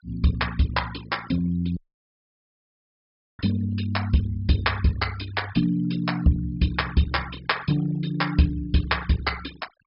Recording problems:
treble cut off; nothing above 5.5 kHz
noise reduction artefacts; signal-to-artefact ratio 18 dB
audio cutting out; at 2 s for 1.5 s

